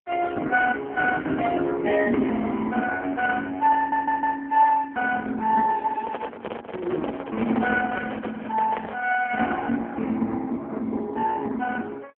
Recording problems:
phone line; 170 Hz to 2.2 kHz, AMR-NB
audio stuttering; at 4 s
handling noise; from 6 to 9 s; peak +1 dB vs average level

